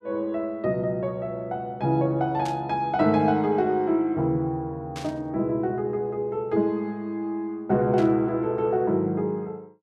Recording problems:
burst of static; at 2.5 s, at 5 s and at 8 s; peak -9 dB vs average level

